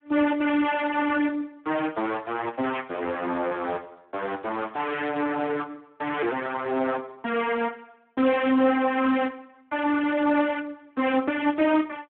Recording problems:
phone line; 220 Hz to 3.4 kHz, Speex

